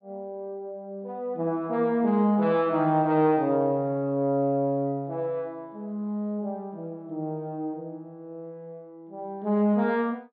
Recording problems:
treble cut off; nothing above 5 kHz

